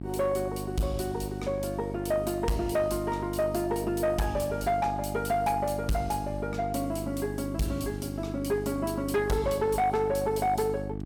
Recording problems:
distortion; soft clipping, signal-to-distortion ratio 12 dB
electrical hum; 50 Hz, harmonics up to 850 Hz, SNR 7 dB

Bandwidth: 17 kHz